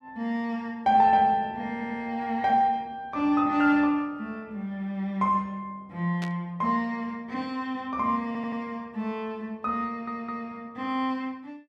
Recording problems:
stutter; at 1.5 s, at 8.5 s and at 10 s
static burst; at 6 s; peak -7 dB vs average level

